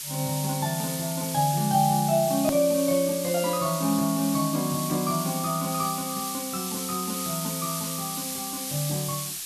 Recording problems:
hiss; SNR 5 dB
edit click; at 2.5 s

